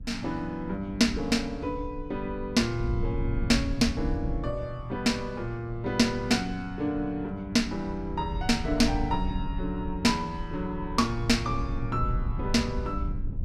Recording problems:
wind on the microphone; below 94 Hz, SNR 8 dB

